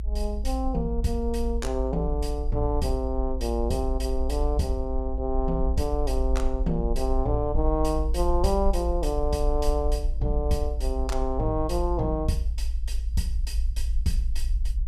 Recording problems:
low-frequency rumble; below 56 Hz, SNR 1 dB

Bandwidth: 15 kHz